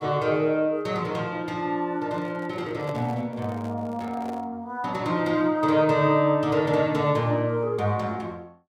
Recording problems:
microphone handling noise; from 2 to 4.5 s; peak -8 dB vs average level

